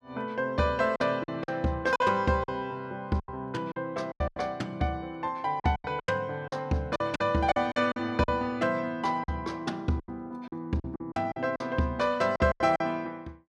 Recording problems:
lost packets; 11% of the sound replaced, filled with silence

